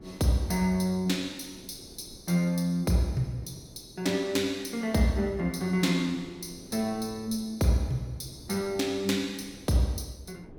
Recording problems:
wind on the microphone; below 400 Hz, SNR 23 dB

